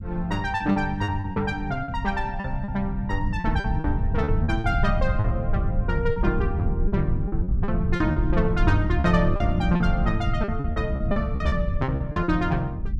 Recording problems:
low-frequency rumble; below 110 Hz, SNR 1 dB
lost packets; 11% of the sound replaced, filled with repeated pitch periods

